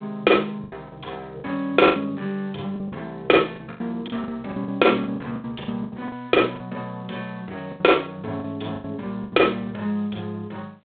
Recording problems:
phone line; 280 Hz to 3.7 kHz, G.726
packet loss; 12% of the sound replaced, filled with the last packet

